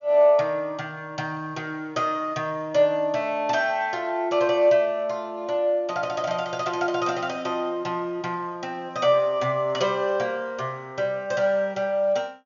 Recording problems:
treble missing; nothing above 7 kHz

